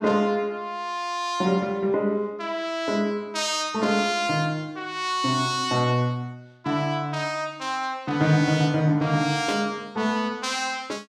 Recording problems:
static burst; at 9.5 s; peak -6 dB vs average level

